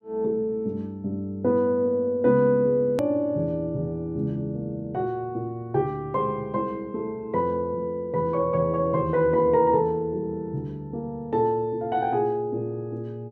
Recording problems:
edit click; at 3 s

